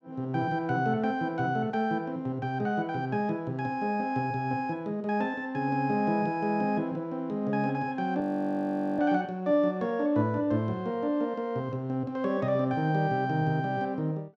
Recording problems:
frozen audio; at 8 s for 1 s

